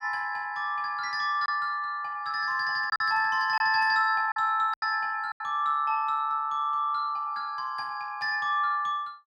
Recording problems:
packet loss; 3% of the sound replaced, filled with silence

